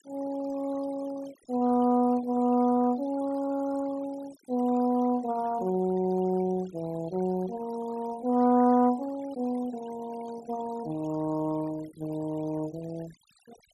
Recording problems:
noise reduction artefacts; signal-to-artefact ratio 21 dB

